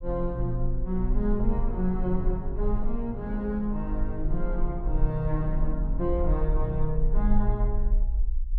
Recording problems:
low-frequency rumble; below 42 Hz, SNR 1 dB

